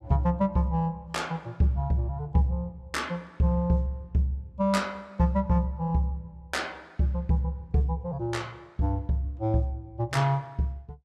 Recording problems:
none

